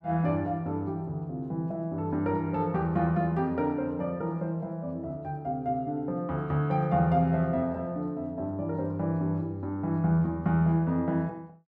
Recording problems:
none

